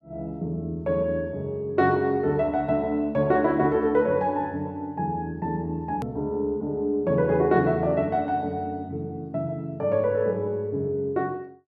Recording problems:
click at an edit; at 6 s

